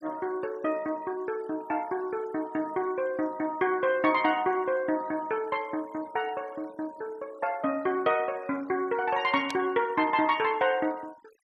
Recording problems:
noise reduction artefacts; signal-to-artefact ratio 24 dB
static burst; at 9.5 s; peak -4 dB vs average level

